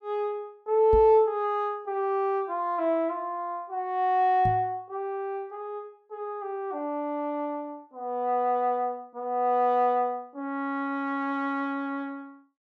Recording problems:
knock on the microphone; at 1 s and at 4.5 s; peak 0 dB vs average level

